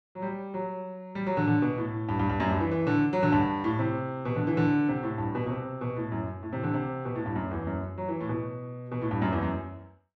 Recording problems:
none

